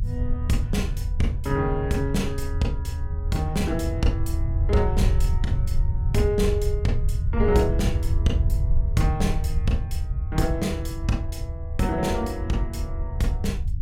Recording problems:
rumble; below 84 Hz, SNR 0 dB

